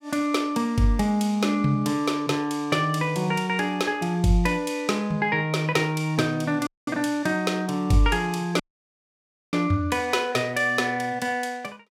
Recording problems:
dropout; at 6.5 s and at 8.5 s for 1 s

